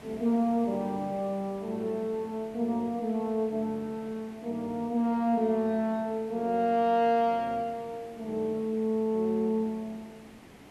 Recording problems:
hiss; SNR 21 dB

